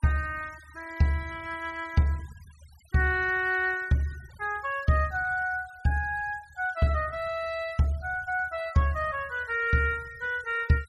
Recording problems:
denoising artefacts; signal-to-artefact ratio 24 dB

